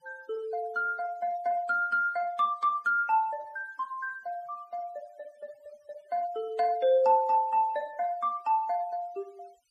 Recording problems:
denoising artefacts; signal-to-artefact ratio 27 dB

